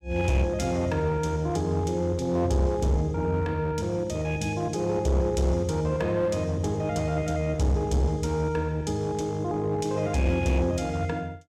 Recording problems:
distortion; hard clipping, uneven, signal-to-distortion ratio 11 dB

